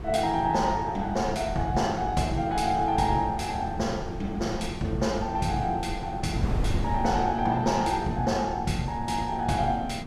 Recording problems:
wind on the microphone; below 190 Hz, SNR 9 dB

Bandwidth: 14.5 kHz